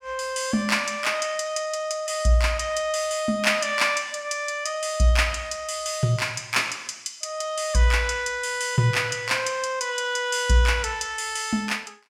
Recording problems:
none

